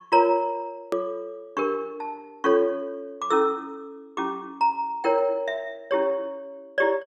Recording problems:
click at an edit; at 1 s

